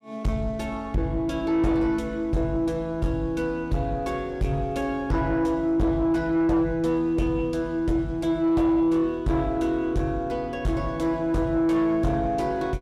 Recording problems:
distorted audio; soft clipping, signal-to-distortion ratio 11 dB

